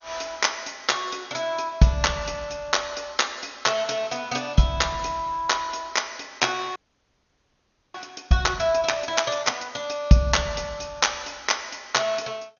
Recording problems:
lossy compression; MP2, log-spectral distance 8 dB, nothing above 6.7 kHz
audio freezing; at 7 s for 1 s

